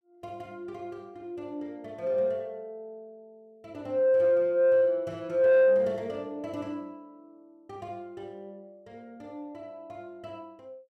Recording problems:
distorted audio; soft clipping, signal-to-distortion ratio 12 dB

